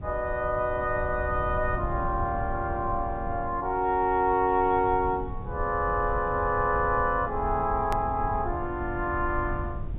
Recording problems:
treble missing; nothing above 4 kHz
rumble; below 110 Hz, SNR 10 dB
hard cut with a click; at 8 s

